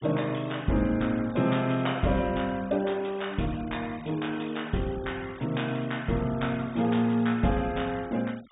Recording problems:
low-pass filter; nothing above 3.7 kHz
denoising artefacts; signal-to-artefact ratio 21 dB

